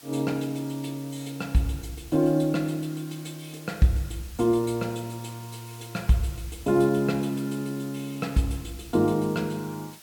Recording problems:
hiss; slope +1 dB per octave, SNR 19 dB

